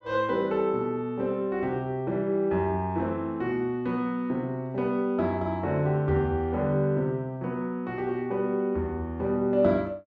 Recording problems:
none

